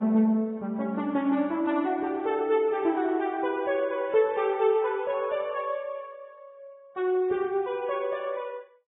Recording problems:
lossy codec; AAC, then Vorbis, log-spectral distance 2 dB, nothing above 3.6 kHz

